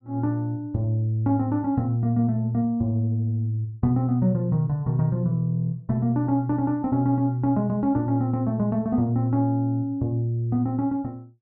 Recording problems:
none

